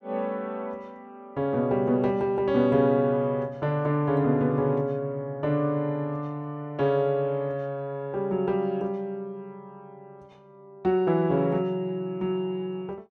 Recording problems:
none

